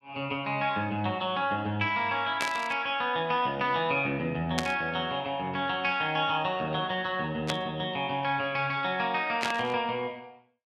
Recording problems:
static burst; 4 times, first at 2.5 s; peak +3 dB vs average level

